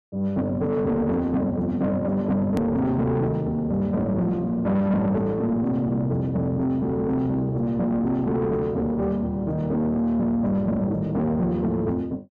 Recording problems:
distorted audio; soft clipping, signal-to-distortion ratio 11 dB
click at an edit; at 2.5 s

